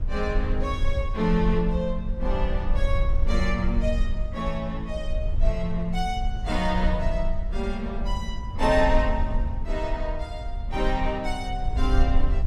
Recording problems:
rumble; below 56 Hz, SNR 1 dB

